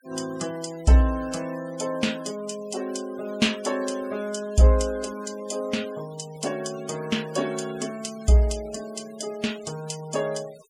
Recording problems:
noise reduction artefacts; signal-to-artefact ratio 19 dB

